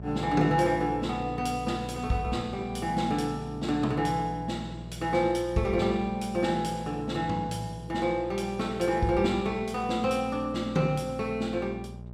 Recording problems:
hum; 60 Hz, harmonics up to 840 Hz, SNR 13 dB

